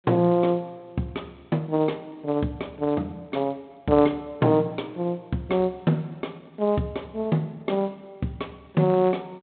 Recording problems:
telephone audio; 130 Hz to 3.6 kHz, G.726

